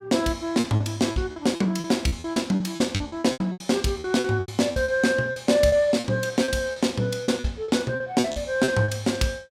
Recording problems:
packet loss; 16% of the sound replaced, filled with repeated pitch periods

